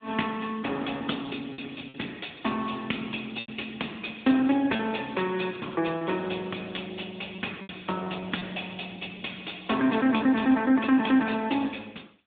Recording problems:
telephone audio; 220 Hz to 3.6 kHz, AMR-NB
lost packets; 4% of the sound replaced, filled with repeated pitch periods

